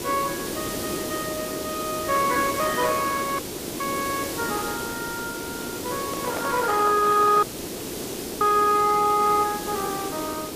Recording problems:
lossy codec; Opus, then Opus, log-spectral distance 4 dB
background hiss; SNR 6 dB
dropout; at 3.5 s and at 7.5 s for 1 s
microphone handling noise; from 6 to 7.5 s; peak -6 dB vs average level
crackle; from 6.5 to 9 s; loose cable, SNR 25 dB

